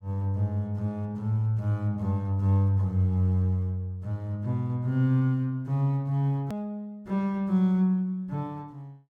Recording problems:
hard cut with a click; at 6.5 s

